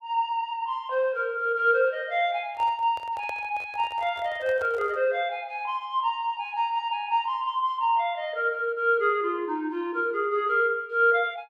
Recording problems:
handling noise; from 2.5 to 5 s; peak -9 dB vs average level

